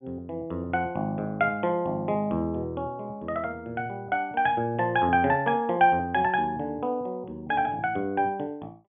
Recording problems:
treble cut off; nothing above 3.4 kHz

